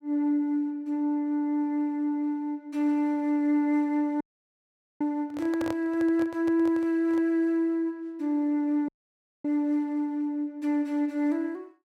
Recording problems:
dropout; at 4 s for 1 s and at 9 s for 0.5 s
microphone handling noise; from 5.5 to 7.5 s; peak -4 dB vs average level

